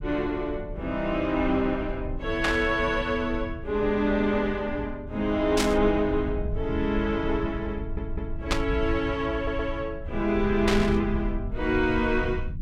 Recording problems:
low-frequency rumble; below 92 Hz, SNR 9 dB
burst of static; 4 times, first at 2.5 s; peak +4 dB vs average level
audio stuttering; at 8 s and at 9.5 s

